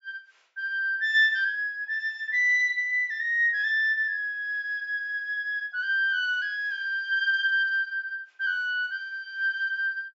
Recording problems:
low-pass filter; nothing above 8 kHz

